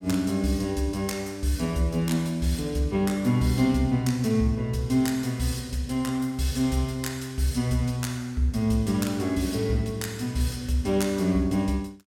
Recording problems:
none

